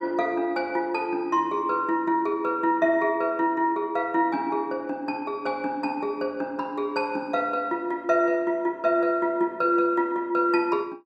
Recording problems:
none

